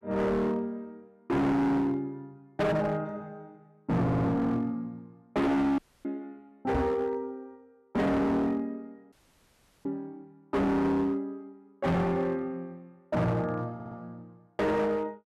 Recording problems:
distortion; hard clipping, signal-to-distortion ratio 6 dB
stutter; at 4 s and at 14 s
dropout; at 6 s and at 9 s for 0.5 s
microphone bump; at 7 s; peak +4 dB vs average level

